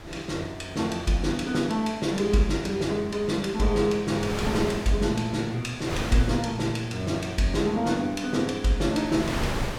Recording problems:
wind noise; below 1.3 kHz, SNR 11 dB

